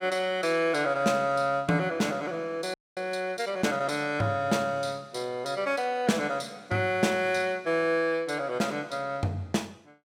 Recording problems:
audio freezing; at 2.5 s

